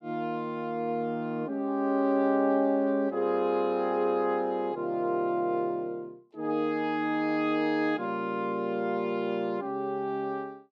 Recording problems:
none

